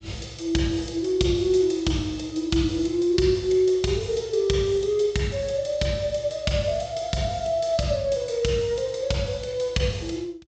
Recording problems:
low-pass filter; nothing above 8 kHz

